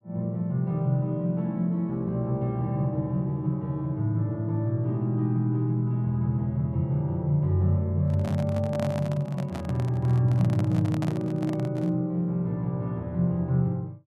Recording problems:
microphone handling noise; from 8 to 12 s; peak -4 dB vs average level

